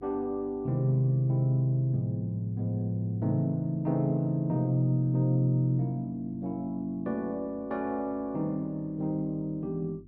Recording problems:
hum; 50 Hz, harmonics up to 350 Hz, SNR 25 dB

